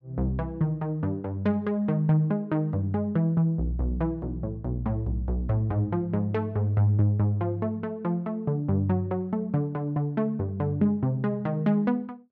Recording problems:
none

